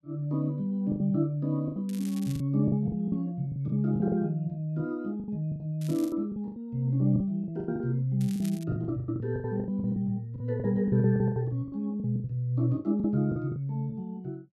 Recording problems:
packet loss; 15% of the sound replaced, filled with the last packet
crackle; at 2 s, at 6 s and at 8 s; loose cable, SNR 20 dB

